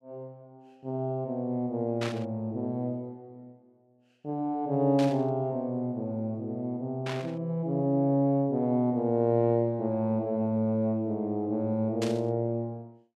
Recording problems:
static burst; 4 times, first at 2 s; peak -4 dB vs average level

